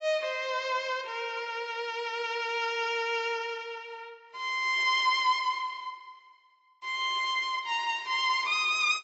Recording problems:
codec artefacts; AAC, log-spectral distance 2 dB, nothing above 7.6 kHz

